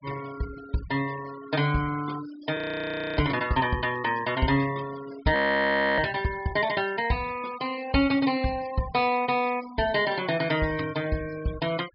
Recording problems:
treble cut off; nothing above 5.2 kHz
noise reduction artefacts; signal-to-artefact ratio 17 dB
frozen audio; at 2.5 s for 0.5 s and at 5.5 s for 0.5 s

